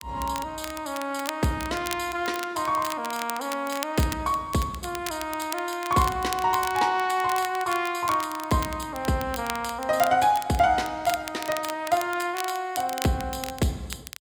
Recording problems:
crackle; vinyl, SNR 11 dB

